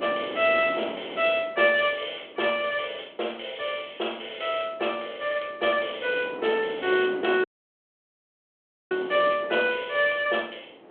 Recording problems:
telephone audio; 280 Hz to 3.4 kHz, G.726
wind noise; below 720 Hz, SNR 16 dB
dropout; at 7.5 s for 1.5 s

